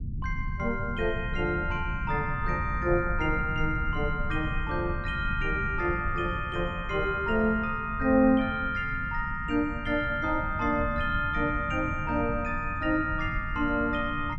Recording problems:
low-frequency rumble; below 140 Hz, SNR 8 dB

